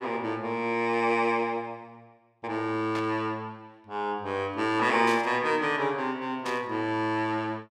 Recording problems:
static burst; at 3 s, at 5 s and at 6.5 s; peak -7 dB vs average level

